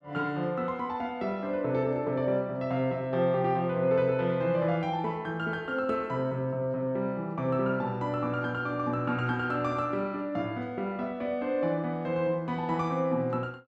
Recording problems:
none

